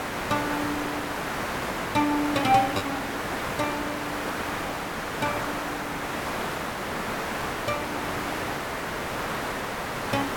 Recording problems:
background hiss; SNR 1 dB
lost packets; 9% of the sound replaced, filled with repeated pitch periods

